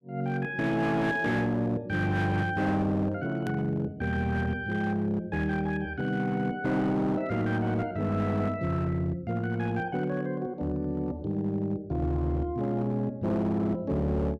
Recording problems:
distortion; hard clipping, signal-to-distortion ratio 12 dB
click at an edit; at 3.5 s

